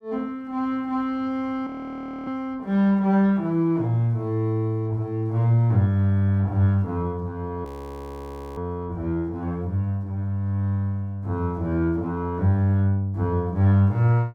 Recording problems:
audio freezing; at 1.5 s for 0.5 s and at 7.5 s for 1 s

